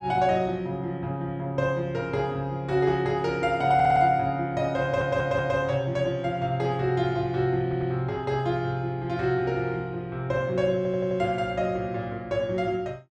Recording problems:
stutter; 4 times, first at 4 s

